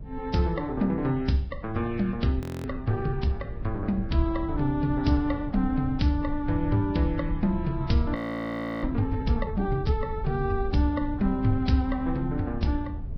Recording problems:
lossy compression; Vorbis, log-spectral distance 2 dB
rumble; below 96 Hz, SNR 9 dB
audio freezing; at 2.5 s and at 8 s for 0.5 s

